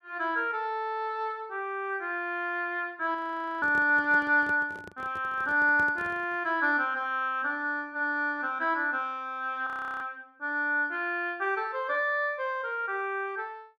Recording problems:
audio freezing; at 3 s and at 9.5 s
handling noise; from 3.5 to 6.5 s; peak -11 dB vs average level

